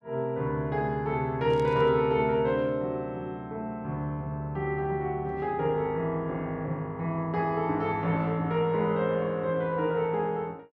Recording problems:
static burst; at 1.5 s; peak -14 dB vs average level

